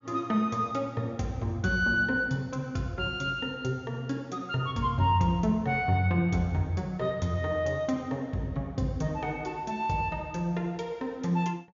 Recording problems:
treble cut off; nothing above 7.1 kHz

